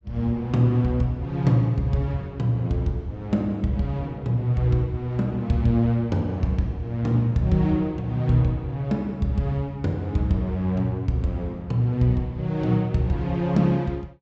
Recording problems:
treble cut off; nothing above 7.9 kHz

